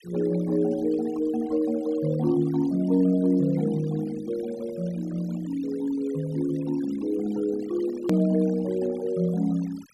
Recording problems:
noise reduction artefacts; signal-to-artefact ratio 21 dB
edit click; at 8 s

